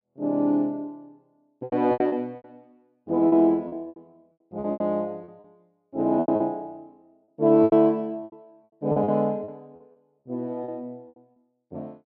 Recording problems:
lost packets; 14% of the sound replaced, filled with repeated pitch periods

